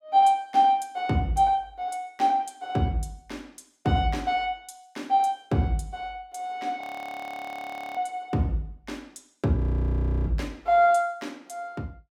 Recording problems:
audio freezing; at 7 s for 1 s and at 9.5 s for 0.5 s

